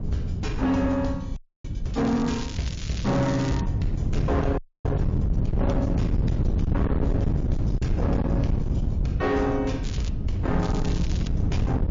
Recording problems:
lossy codec; MP3, log-spectral distance 2 dB
distortion; hard clipping, signal-to-distortion ratio 7 dB
wind on the microphone; below 160 Hz, SNR -1 dB
audio freezing; at 1.5 s and at 4.5 s
crackle; from 2 to 3.5 s, at 10 s and at 11 s; loose cable, SNR 13 dB

